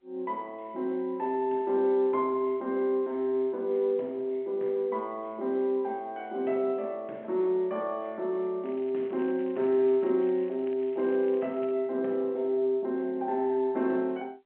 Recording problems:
telephone audio; 220 Hz to 3.5 kHz, G.711
crackle; from 8.5 to 10 s and from 10 to 12 s; loose cable, SNR 29 dB

